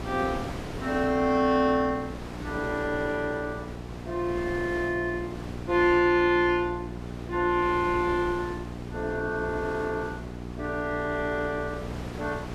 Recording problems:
hum; 60 Hz, harmonics up to 1.1 kHz, SNR 12 dB
wind noise; below 1.1 kHz, SNR 14 dB

